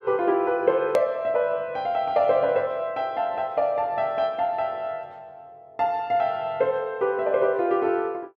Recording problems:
hard cut with a click; at 1 s

